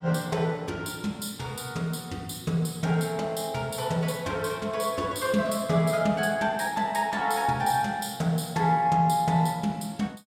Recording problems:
none

